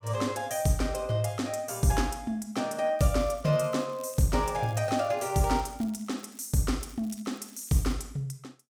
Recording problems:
crackling; from 3 to 6.5 s and from 7 to 8 s; loose cable, SNR 26 dB

